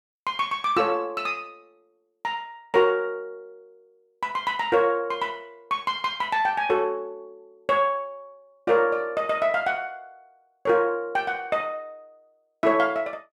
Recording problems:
none

